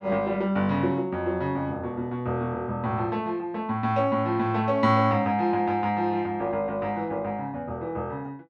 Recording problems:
none

